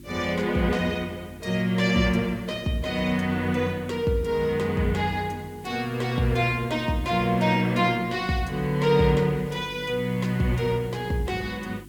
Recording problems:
electrical hum; 50 Hz, harmonics up to 350 Hz, SNR 21 dB
background hiss; slope +1 dB per octave, SNR 28 dB

